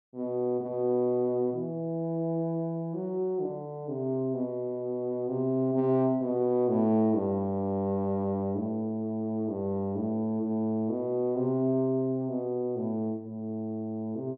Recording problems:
none

